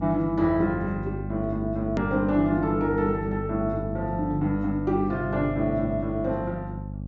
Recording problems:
treble missing; nothing above 7.6 kHz
hum; 50 Hz, harmonics up to 550 Hz, SNR 7 dB
hard cut with a click; at 2 s

